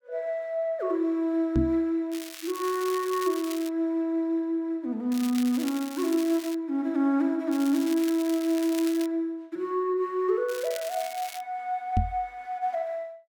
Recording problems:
microphone bump; at 1.5 s and at 12 s; peak +5 dB vs average level
crackle; 4 times, first at 2 s; loose cable, SNR 13 dB

